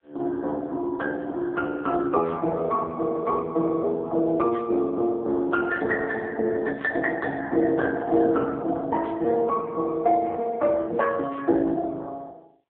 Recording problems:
telephone audio; 240 Hz to 2.8 kHz, AMR-NB

